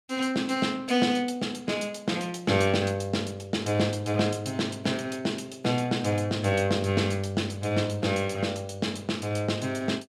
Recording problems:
none

